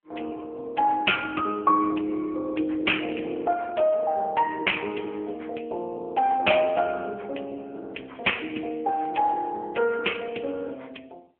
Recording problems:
phone line; 280 Hz to 3.3 kHz, AMR-NB

